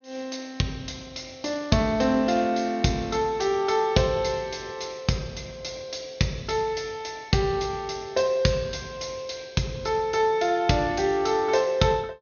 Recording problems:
low-pass filter; nothing above 6.5 kHz

